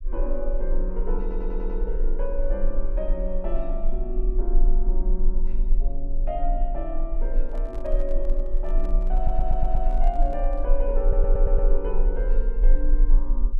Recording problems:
low-frequency rumble; below 34 Hz, strongest tone 24 Hz, SNR -6 dB
audio stuttering; at 1 s, at 9 s and at 11 s
microphone handling noise; from 7.5 to 11 s; peak -9 dB vs average level

